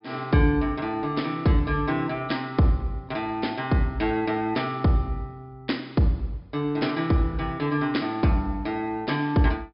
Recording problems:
treble cut off; nothing above 5.5 kHz

